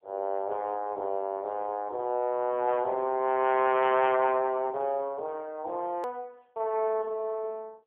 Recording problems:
telephone audio; 320 Hz to 3.4 kHz, AMR-NB
click at an edit; at 6 s

